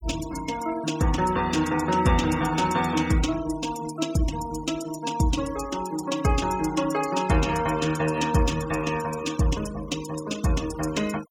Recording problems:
noise reduction artefacts; signal-to-artefact ratio 13 dB

